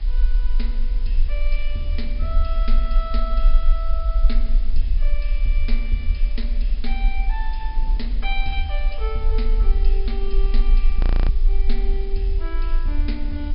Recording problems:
low-pass filter; nothing above 5.5 kHz
background hiss; slope -1 dB per octave, SNR 16 dB
rumble; below 38 Hz, strongest tone 26 Hz, SNR -9 dB
wind noise; below 240 Hz, SNR 16 dB
audio freezing; at 11 s

